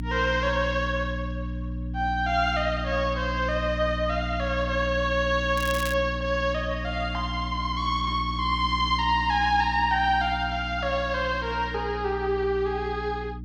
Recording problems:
hum; 60 Hz, harmonics up to 300 Hz, SNR 8 dB
crackle; at 5.5 s; loose cable, SNR 12 dB

